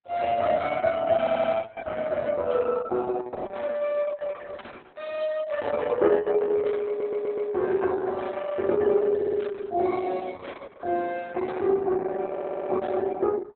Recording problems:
lossy codec; Opus, log-spectral distance 3 dB, nothing above 4 kHz
audio stuttering; 4 times, first at 1 s

